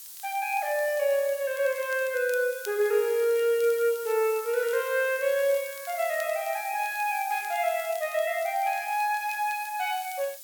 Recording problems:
hiss; SNR 14 dB
crackling; vinyl, SNR 24 dB

